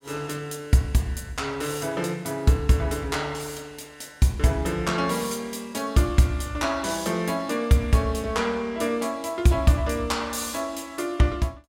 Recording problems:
none

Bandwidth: 17 kHz